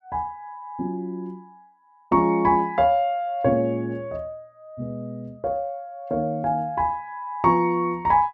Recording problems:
none

